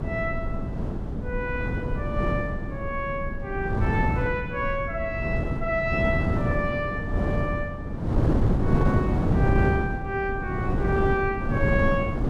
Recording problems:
rumble; below 130 Hz, SNR 10 dB
wind on the microphone; below 290 Hz, SNR -2 dB

